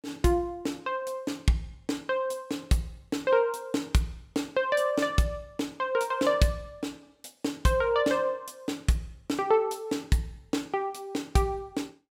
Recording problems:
none

